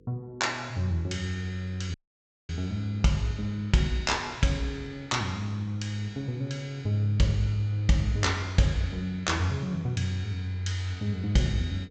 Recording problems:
low-pass filter; nothing above 8 kHz
hum; 50 Hz, harmonics up to 500 Hz, SNR 28 dB
dropout; at 2 s for 0.5 s

